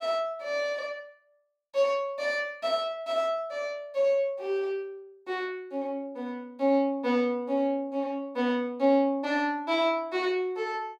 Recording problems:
none

